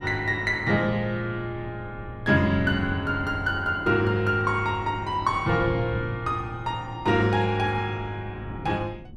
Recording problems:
wind noise; below 250 Hz, SNR 14 dB

